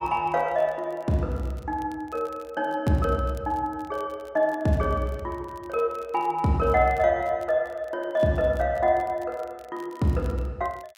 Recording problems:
crackling; vinyl, SNR 30 dB

